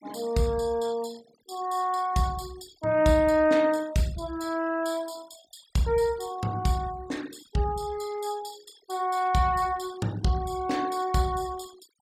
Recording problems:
denoising artefacts; signal-to-artefact ratio 21 dB

